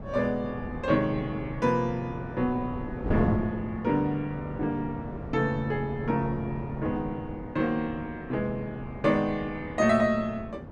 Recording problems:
wind on the microphone; below 450 Hz, SNR 9 dB

